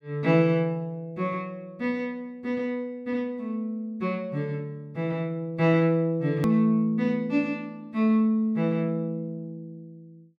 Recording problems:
click at an edit; at 6.5 s

